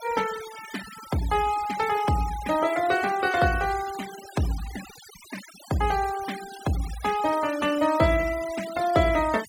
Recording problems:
denoising artefacts; signal-to-artefact ratio 15 dB

